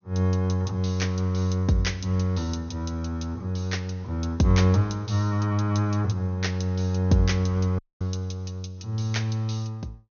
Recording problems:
treble cut off; nothing above 6.5 kHz
dropout; at 8 s

